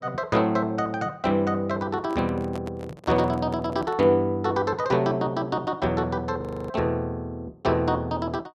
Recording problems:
microphone handling noise; from 2 to 4 s; peak -7 dB vs average level
frozen audio; at 6.5 s

